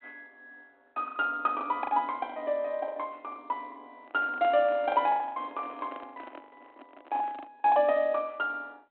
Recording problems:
telephone audio; 240 Hz to 3.3 kHz, G.726
packet loss; 14% of the sound replaced, filled with the last packet
handling noise; from 4 to 7.5 s; peak -8 dB vs average level

